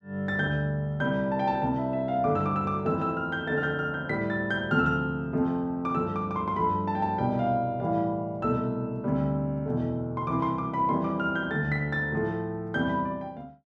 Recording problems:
none

